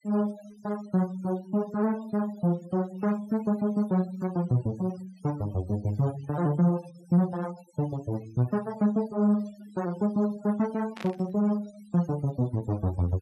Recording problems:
denoising artefacts; signal-to-artefact ratio 21 dB
burst of static; at 11 s; peak -9 dB vs average level

